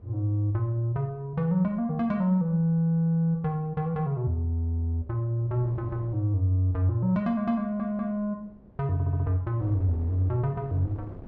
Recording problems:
wind on the microphone; below 350 Hz, SNR 23 dB
stutter; at 7.5 s and at 9 s

